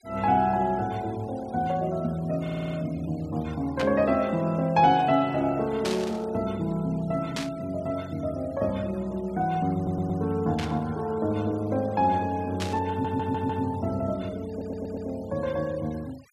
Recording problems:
denoising artefacts; signal-to-artefact ratio 24 dB
stutter; 4 times, first at 2.5 s
burst of static; 5 times, first at 4 s; peak -1 dB vs average level

